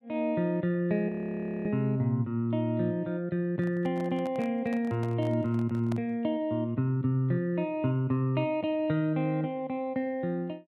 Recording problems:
frozen audio; at 1 s for 0.5 s
handling noise; from 3.5 to 6 s; peak -7 dB vs average level

